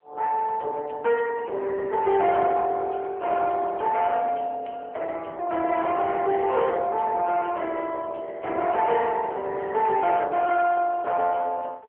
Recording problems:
telephone audio; 340 Hz to 3.2 kHz, AMR-NB
distortion; soft clipping, signal-to-distortion ratio 12 dB

